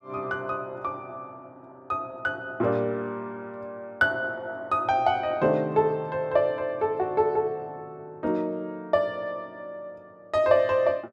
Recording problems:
none

